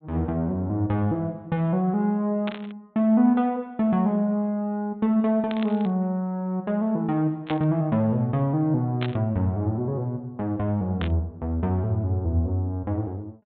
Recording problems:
treble cut off; nothing above 4 kHz
static burst; 5 times, first at 2.5 s; peak -4 dB vs average level

